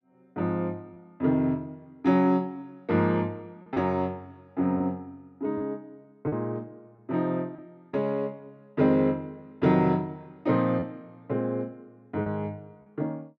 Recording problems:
packet loss; 2% of the sound replaced, filled with repeated pitch periods

